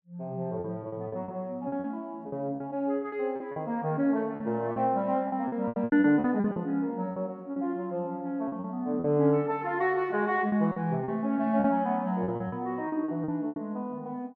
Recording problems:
lost packets; 11% of the sound replaced, filled with repeated pitch periods

